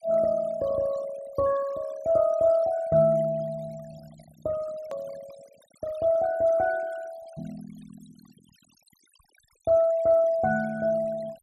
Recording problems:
denoising artefacts; signal-to-artefact ratio 23 dB
click at an edit; at 5 s

